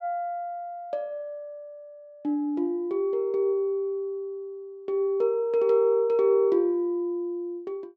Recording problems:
none

